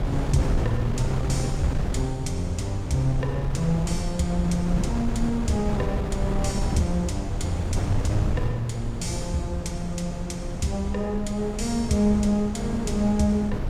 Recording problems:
wind on the microphone; below 170 Hz, SNR 3 dB

